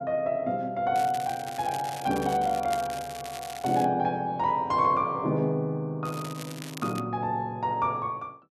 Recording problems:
crackle; from 1 to 4 s and at 6 s; loose cable, SNR 15 dB

